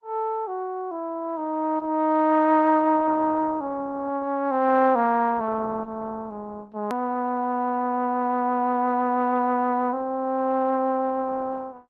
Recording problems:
lossy codec; Opus, log-spectral distance 2 dB
click at an edit; at 7 s

